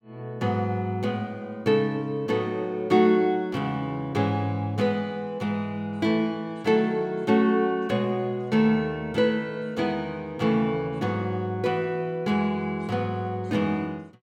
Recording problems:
none

